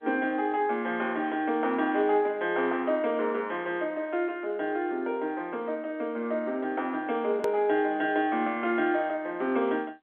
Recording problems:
phone line; 240 Hz to 3.5 kHz, G.711
edit click; at 7.5 s

